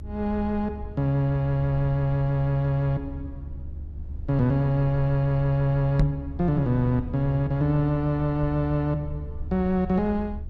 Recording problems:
electrical hum; 50 Hz, harmonics up to 350 Hz, SNR 24 dB
rumble; below 74 Hz, SNR 12 dB
microphone bump; at 6 s; peak +7 dB vs average level

